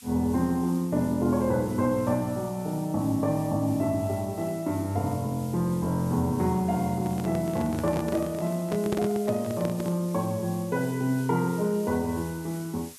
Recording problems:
hiss; slope +4 dB per octave, SNR 19 dB
microphone handling noise; from 7 to 10 s; peak +2 dB vs average level

